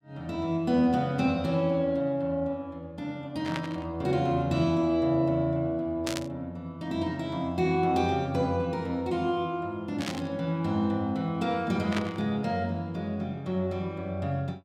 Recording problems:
burst of static; 4 times, first at 3.5 s; peak 0 dB vs average level

